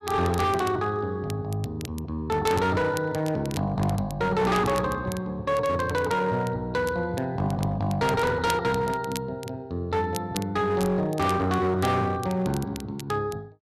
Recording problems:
distorted audio; hard clipping, uneven, signal-to-distortion ratio 11 dB
crackle; vinyl, SNR 17 dB

